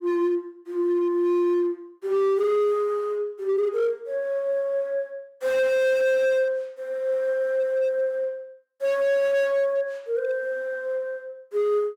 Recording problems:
distorted audio; hard clipping, signal-to-distortion ratio 10 dB

